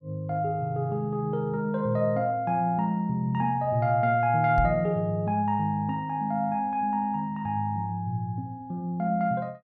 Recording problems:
microphone bump; at 4.5 s; peak +2 dB vs average level

